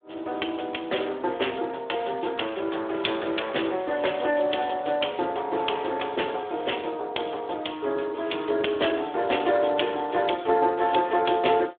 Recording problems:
phone line; 300 Hz to 3.5 kHz, Speex

